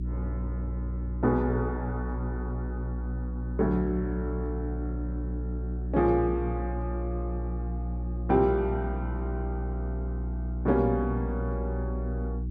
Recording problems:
hum; 60 Hz, harmonics up to 360 Hz, SNR 2 dB

